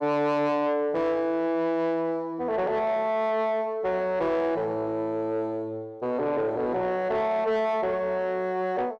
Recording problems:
distortion; soft clipping, signal-to-distortion ratio 12 dB

